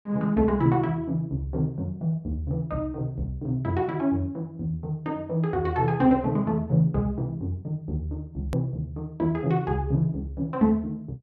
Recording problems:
hard cut with a click; at 8.5 s

